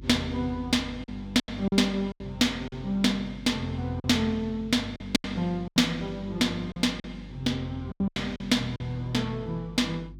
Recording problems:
electrical hum; 50 Hz, harmonics up to 350 Hz, SNR 18 dB
packet loss; 8% of the sound replaced, filled with silence

